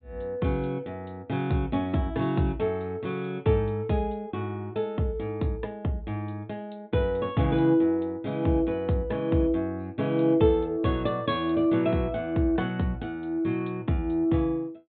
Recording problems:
treble missing; nothing above 4 kHz

